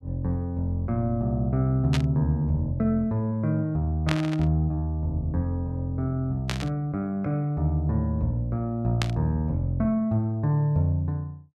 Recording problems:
burst of static; 4 times, first at 2 s; peak +1 dB vs average level

